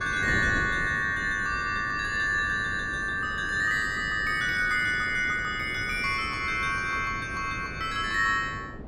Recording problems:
wind noise; below 370 Hz, SNR 13 dB

